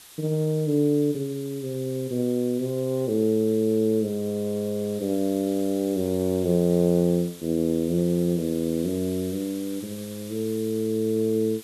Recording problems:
background hiss; SNR 18 dB

